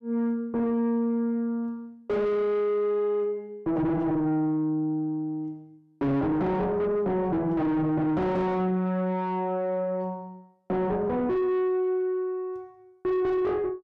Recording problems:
distortion; soft clipping, signal-to-distortion ratio 5 dB

